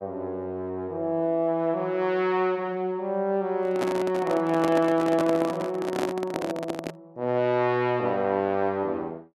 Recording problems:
handling noise; from 3.5 to 7 s; peak +1 dB vs average level

